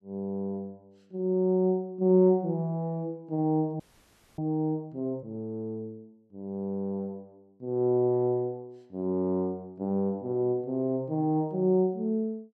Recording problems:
frozen audio; at 4 s for 0.5 s

